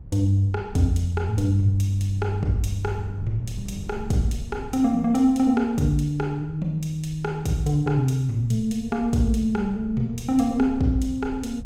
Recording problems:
wind noise; below 120 Hz, SNR 16 dB

